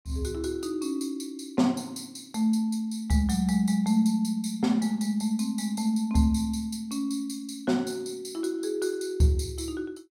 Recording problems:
none

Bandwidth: 16.5 kHz